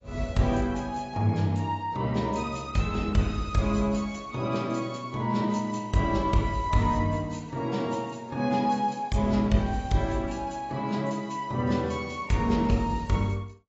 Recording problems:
lossy compression; AAC, log-spectral distance 3 dB, nothing above 7.3 kHz

